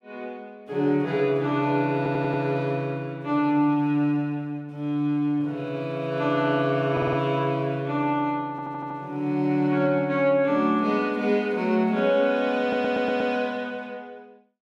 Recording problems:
audio stuttering; 4 times, first at 2 s

